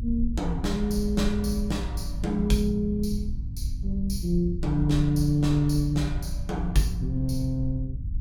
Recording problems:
electrical hum; 50 Hz, harmonics up to 300 Hz, SNR 14 dB
rumble; below 66 Hz, SNR 7 dB

